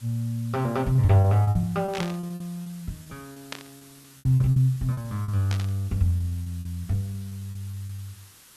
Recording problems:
background hiss; SNR 24 dB
lost packets; 16% of the sound replaced, filled with repeated pitch periods
static burst; at 2 s, at 3.5 s and at 5.5 s; peak -4 dB vs average level

